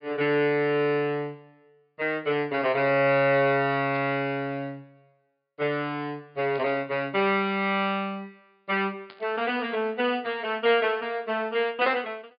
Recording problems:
low-pass filter; nothing above 5 kHz
burst of static; at 4 s, at 6.5 s and at 9 s; peak -17 dB vs average level

